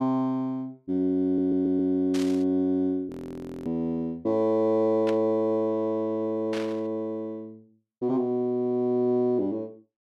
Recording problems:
audio stuttering; at 1.5 s
burst of static; at 2 s, at 5 s and at 6.5 s; peak -8 dB vs average level
audio freezing; at 3 s for 0.5 s

